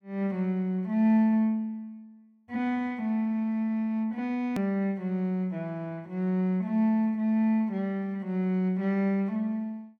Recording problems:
edit click; at 4.5 s

